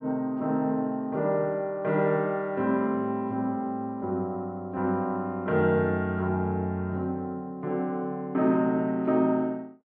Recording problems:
none

